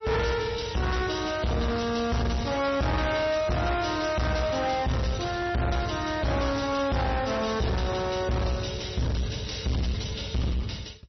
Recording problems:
codec artefacts; MP3, log-spectral distance 8 dB, nothing above 5.8 kHz
distortion; soft clipping, signal-to-distortion ratio 6 dB

